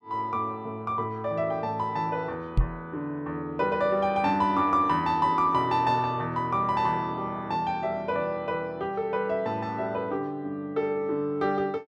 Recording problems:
microphone bump; at 2.5 s; peak +7 dB vs average level

